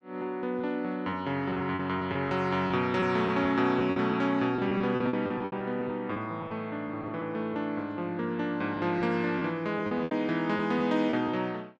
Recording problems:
lost packets; 8% of the sound replaced, filled with repeated pitch periods

